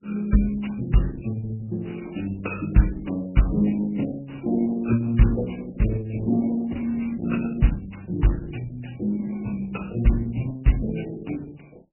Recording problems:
codec artefacts; Opus, then MP3, log-spectral distance 5 dB, nothing above 2.8 kHz

